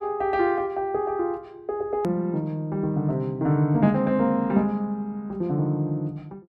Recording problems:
edit click; at 2 s

